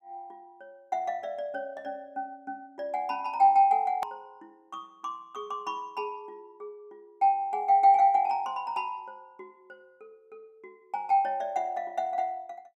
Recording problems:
edit click; at 4 s

